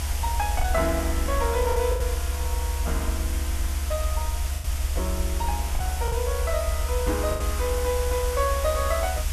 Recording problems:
hiss; slope 0 dB per octave, SNR 6 dB
rumble; below 72 Hz, strongest tone 70 Hz, SNR 0 dB
packet loss; 4% of the sound replaced, filled with the last packet

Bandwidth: 13.5 kHz